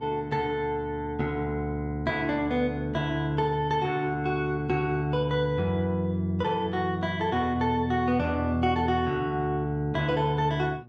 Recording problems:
hum; 60 Hz, harmonics up to 1.1 kHz, SNR 22 dB

